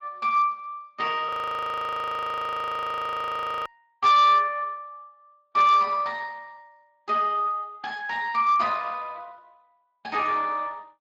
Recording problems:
codec artefacts; Speex, then Speex, log-spectral distance 3 dB, nothing above 18.3 kHz
distorted audio; hard clipping, uneven, signal-to-distortion ratio 11 dB
audio freezing; at 1.5 s for 2.5 s

